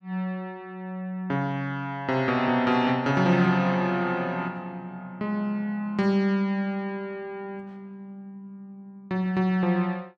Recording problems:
none

